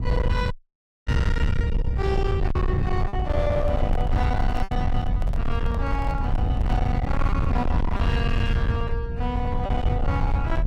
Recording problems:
distortion; hard clipping, signal-to-distortion ratio 8 dB
rumble; below 110 Hz, SNR -3 dB
packet loss; 2% of the sound replaced, filled with repeated pitch periods
audio cutting out; at 0.5 s for 0.5 s
handling noise; from 3.5 to 7.5 s; peak -4 dB vs average level

